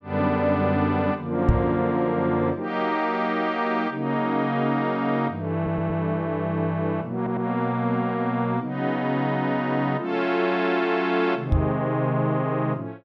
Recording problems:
microphone bump; at 1.5 s and at 12 s; peak +7 dB vs average level
stutter; at 5.5 s and at 7 s

